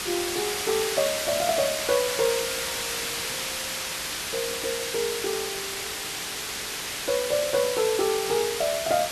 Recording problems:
hum; 60 Hz, harmonics up to 600 Hz, SNR 25 dB
hiss; slope +1 dB per octave, SNR 1 dB

